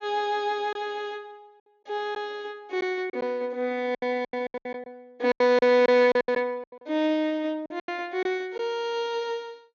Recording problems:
treble missing; nothing above 7 kHz
lost packets; 10% of the sound replaced, filled with silence

